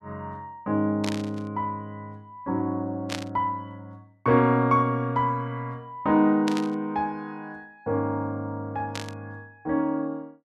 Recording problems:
static burst; 4 times, first at 1 s; peak -2 dB vs average level

